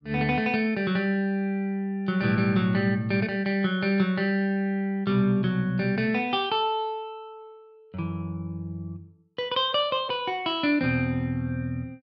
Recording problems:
none

